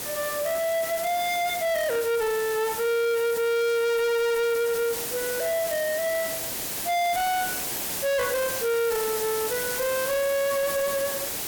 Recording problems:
distorted audio; soft clipping, signal-to-distortion ratio 7 dB
hiss; slope -2 dB per octave, SNR 4 dB

